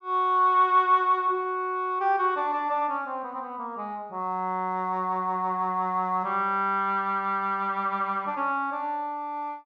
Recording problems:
low-pass filter; nothing above 8 kHz

